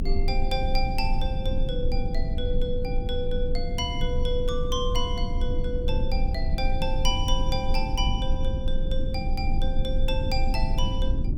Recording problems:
low-frequency rumble; below 58 Hz, strongest tone 22 Hz, SNR -2 dB

